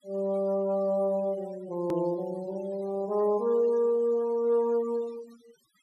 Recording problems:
noise reduction artefacts; signal-to-artefact ratio 25 dB
click at an edit; at 2 s

